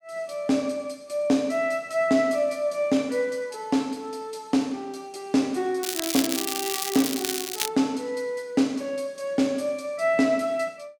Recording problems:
crackling; from 6 to 7.5 s; loose cable, SNR 2 dB

